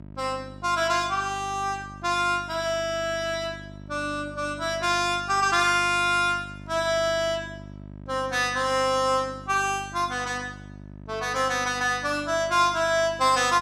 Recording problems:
electrical hum; 50 Hz, harmonics up to 1 kHz, SNR 18 dB

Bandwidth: 14.5 kHz